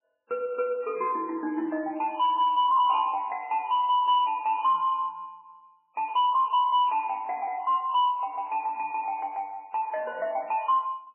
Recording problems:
lossy codec; MP3, log-spectral distance 2 dB, nothing above 2.4 kHz
distorted audio; soft clipping, signal-to-distortion ratio 11 dB

